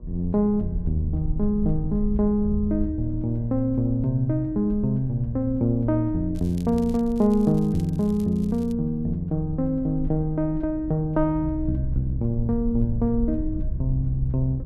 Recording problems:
hum; 60 Hz, harmonics up to 1.2 kHz, SNR 29 dB
rumble; below 70 Hz, SNR 11 dB
crackle; from 6.5 to 8.5 s; loose cable, SNR 27 dB

